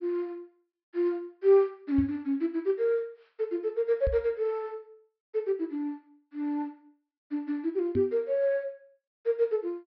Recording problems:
low-pass filter; nothing above 5.5 kHz
microphone thump; at 2 s, at 4 s and at 8 s; peak +1 dB vs average level

